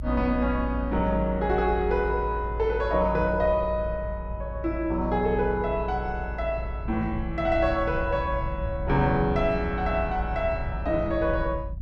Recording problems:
low-frequency rumble; below 76 Hz, strongest tone 56 Hz, SNR 7 dB

